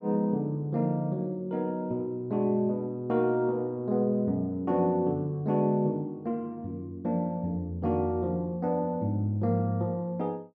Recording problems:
none

